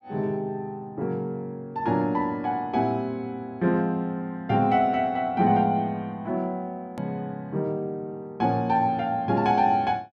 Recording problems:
click at an edit; at 7 s

